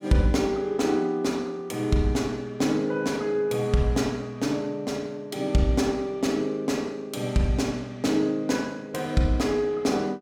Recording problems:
none

